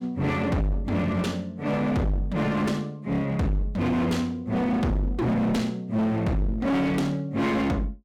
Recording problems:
distortion; hard clipping, uneven, signal-to-distortion ratio 7 dB

